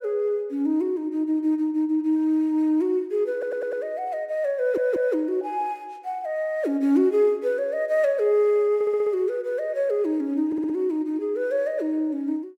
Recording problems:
audio stuttering; 4 times, first at 3.5 s

